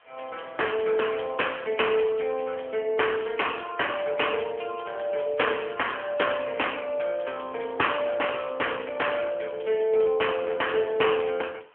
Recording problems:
phone line; 340 Hz to 3.2 kHz, AMR-NB
background hiss; SNR 30 dB

